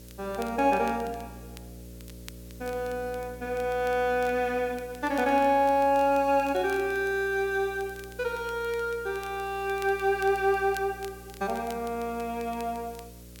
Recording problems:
hum; 60 Hz, harmonics up to 600 Hz, SNR 20 dB
hiss; slope +1 dB per octave, SNR 24 dB
crackling; vinyl, SNR 24 dB

